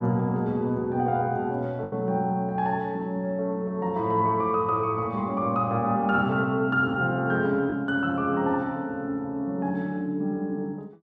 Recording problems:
packet loss; 0.9% of the sound replaced, filled with the last packet

